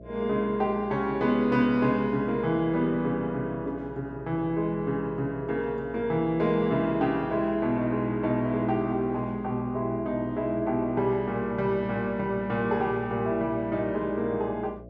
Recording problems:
hum; 60 Hz, harmonics up to 660 Hz, SNR 18 dB

